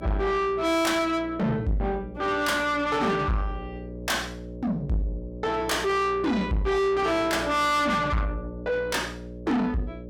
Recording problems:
distortion; soft clipping, signal-to-distortion ratio 7 dB
hum; 60 Hz, harmonics up to 840 Hz, SNR 13 dB

